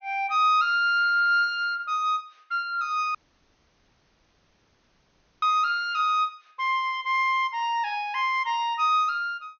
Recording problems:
treble missing; nothing above 6.4 kHz
dropout; at 3 s for 2.5 s

